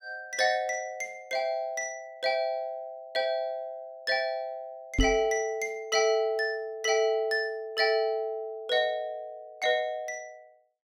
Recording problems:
microphone thump; at 5 s; peak +6 dB vs average level

